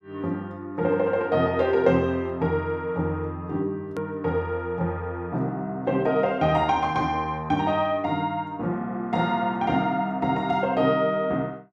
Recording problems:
edit click; at 4 s

